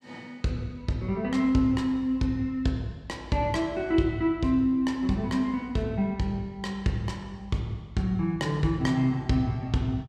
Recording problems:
none

